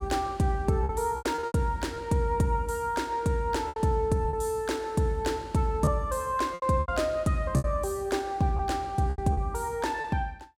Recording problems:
lost packets; 8% of the sound replaced, filled with repeated pitch periods

